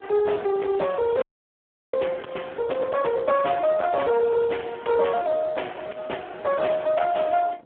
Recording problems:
phone line; 280 Hz to 3.5 kHz, Speex
distorted audio; soft clipping, signal-to-distortion ratio 11 dB
wind noise; below 890 Hz, SNR 23 dB
crackling; from 0.5 to 2.5 s and at 4 s; loose cable, SNR 27 dB
frozen audio; at 1 s for 0.5 s

